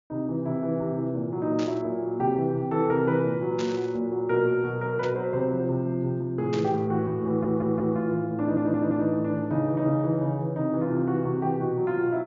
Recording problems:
low-pass filter; nothing above 7.2 kHz
burst of static; 4 times, first at 1.5 s; peak -8 dB vs average level
audio stuttering; at 7.5 s and at 8.5 s

